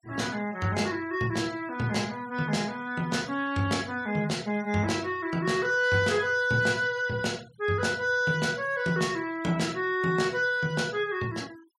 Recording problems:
denoising artefacts; signal-to-artefact ratio 23 dB

